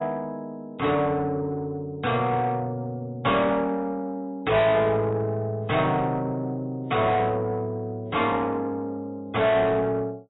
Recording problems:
lossy codec; AAC, log-spectral distance 2 dB, nothing above 3.8 kHz
distorted audio; soft clipping, signal-to-distortion ratio 7 dB

